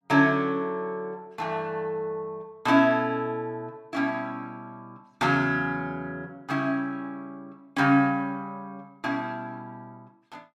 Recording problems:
none

